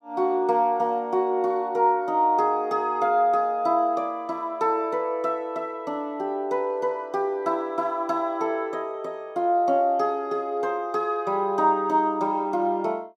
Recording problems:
none

